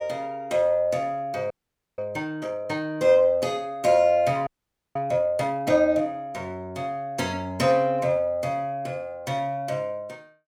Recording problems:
audio freezing; at 1.5 s and at 4.5 s

